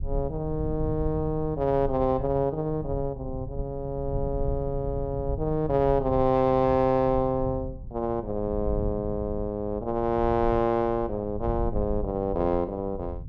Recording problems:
low-frequency rumble; below 96 Hz, SNR 10 dB

